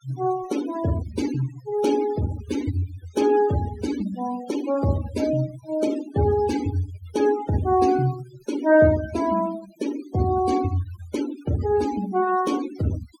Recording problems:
noise reduction artefacts; signal-to-artefact ratio 15 dB

